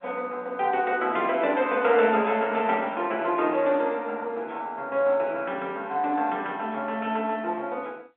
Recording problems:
telephone audio; 280 Hz to 4 kHz, G.711

